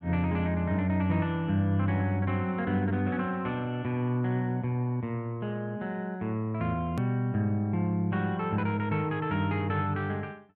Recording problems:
hard cut with a click; at 7 s

